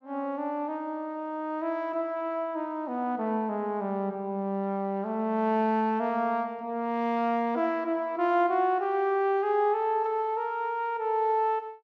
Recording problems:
none

